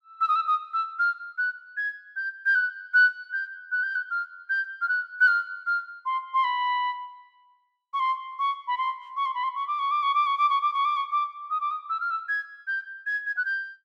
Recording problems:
none

